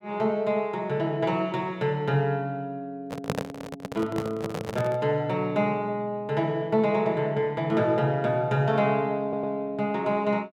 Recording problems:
handling noise; from 3 to 5 s; peak +3 dB vs average level
stutter; at 9 s

